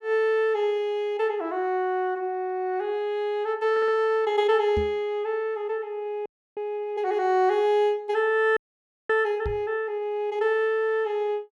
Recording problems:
stutter; at 3.5 s
microphone bump; at 5 s and at 9.5 s; peak -2 dB vs average level
frozen audio; at 6.5 s and at 8.5 s for 0.5 s

